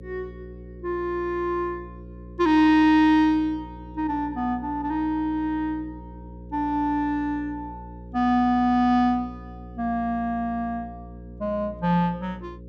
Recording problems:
hum; 60 Hz, harmonics up to 540 Hz, SNR 18 dB

